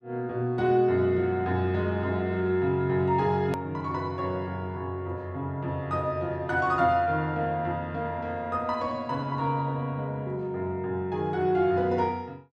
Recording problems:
hard cut with a click; at 3.5 s

